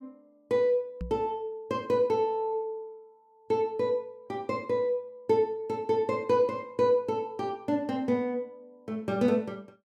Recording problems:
microphone thump; at 1 s; peak -4 dB vs average level

